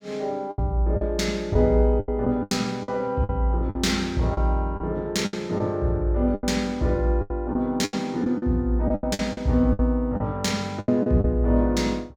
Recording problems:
packet loss; 11% of the sound replaced, filled with the last packet

